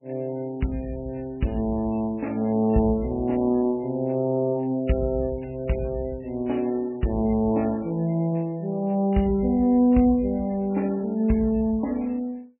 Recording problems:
lossy codec; MP3, log-spectral distance 3 dB, nothing above 2.9 kHz

